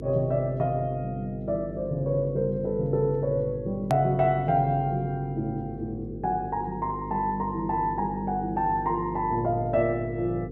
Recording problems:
electrical hum; 50 Hz, harmonics up to 500 Hz, SNR 10 dB
hard cut with a click; at 4 s

